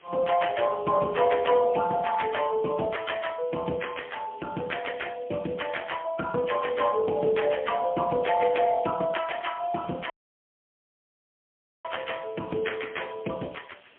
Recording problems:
telephone audio; 190 Hz to 3.3 kHz, AMR-NB, then MP3
background hiss; SNR 29 dB
audio cutting out; at 10 s for 2 s

